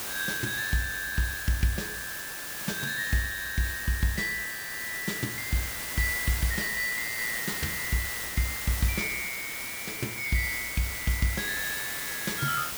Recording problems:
background hiss; slope -1 dB per octave, SNR 3 dB

